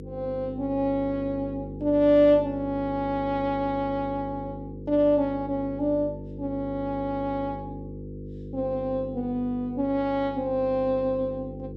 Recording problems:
electrical hum; 50 Hz, harmonics up to 500 Hz, SNR 12 dB

